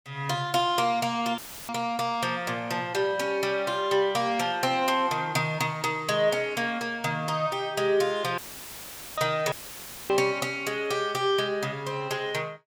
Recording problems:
dropout; at 1.5 s, at 8.5 s for 1 s and at 9.5 s for 0.5 s; filled with static

